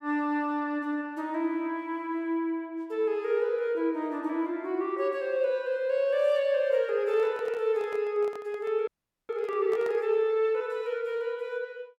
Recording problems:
microphone handling noise; from 7 to 10 s; peak -10 dB vs average level
audio freezing; at 9 s

